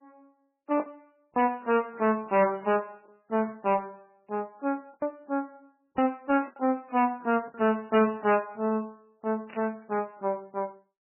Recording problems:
lossy compression; MP3, log-spectral distance 3 dB, nothing above 2.9 kHz
distorted audio; hard clipping, signal-to-distortion ratio 11 dB
lost packets; 5% of the sound replaced, filled with the last packet
burst of static; at 3.5 s, at 6.5 s and at 9.5 s; peak -11 dB vs average level

